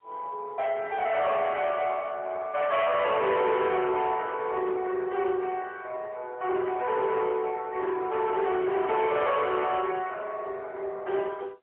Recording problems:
phone line; 320 Hz to 3.3 kHz, AMR-NB, then MP3
distorted audio; soft clipping, signal-to-distortion ratio 8 dB

